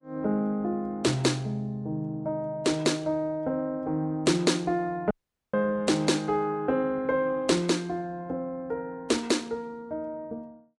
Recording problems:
lossy compression; Vorbis, log-spectral distance 2 dB, nothing above 10.1 kHz
audio cutting out; at 5 s

